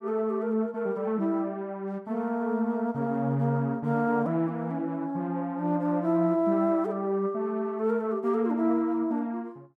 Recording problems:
none

